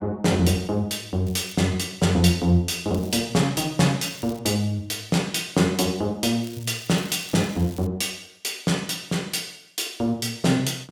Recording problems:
crackle; 4 times, first at 1.5 s; loose cable, SNR 21 dB

